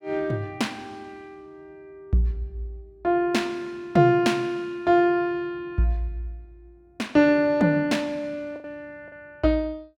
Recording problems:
packet loss; 1.3% of the sound replaced, filled with the last packet

